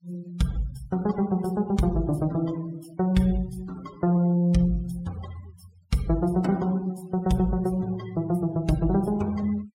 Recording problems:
noise reduction artefacts; signal-to-artefact ratio 22 dB

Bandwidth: 16 kHz